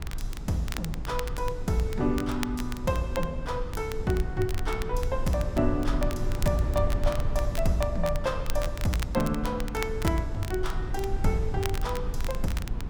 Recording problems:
hum; 50 Hz, harmonics up to 950 Hz, SNR 23 dB
rumble; below 72 Hz, SNR 4 dB
crackling; vinyl, SNR 12 dB

